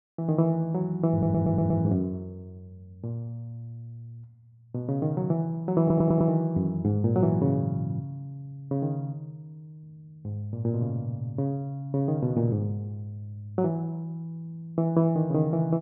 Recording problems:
audio stuttering; at 1 s and at 6 s

